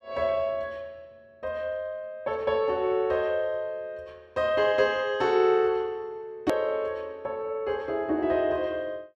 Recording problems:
edit click; at 6.5 s

